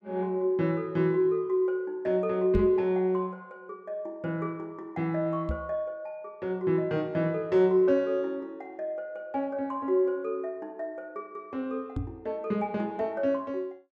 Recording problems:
microphone thump; at 2.5 s, at 5.5 s and at 12 s; peak +1 dB vs average level

